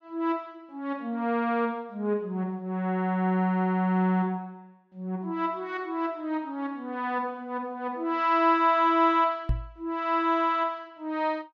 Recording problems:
microphone bump; at 9.5 s; peak +3 dB vs average level

